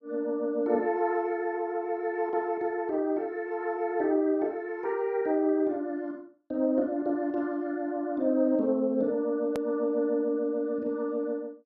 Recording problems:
hard cut with a click; at 9.5 s

